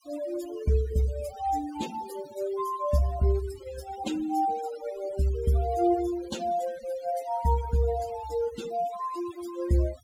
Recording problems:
denoising artefacts; signal-to-artefact ratio 17 dB

